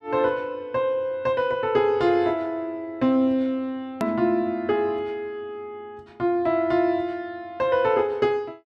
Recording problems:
hard cut with a click; at 4 s

